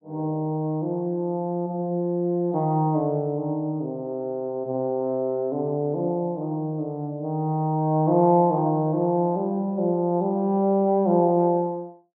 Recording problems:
low-pass filter; nothing above 4 kHz

